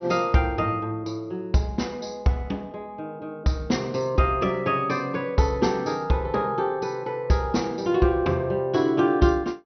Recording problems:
treble cut off; nothing above 6 kHz

